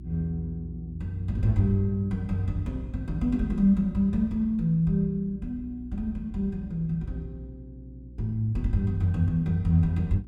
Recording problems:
hum; 60 Hz, harmonics up to 360 Hz, SNR 16 dB

